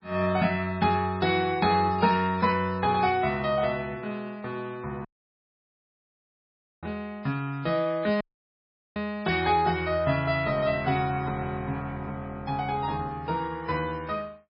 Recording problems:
codec artefacts; MP3, log-spectral distance 2 dB, nothing above 5 kHz
audio cutting out; at 5 s for 2 s and at 8 s for 1 s

